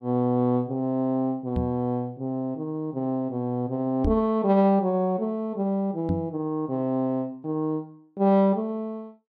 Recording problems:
microphone thump; at 1.5 s, at 4 s and at 6 s; peak +3 dB vs average level

